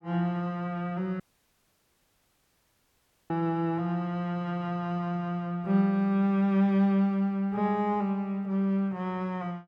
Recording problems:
dropout; at 1 s for 2 s

